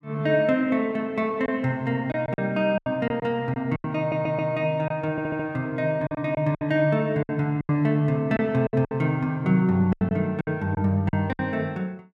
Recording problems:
lost packets; 9% of the sound replaced, filled with silence
stutter; at 4 s and at 5 s

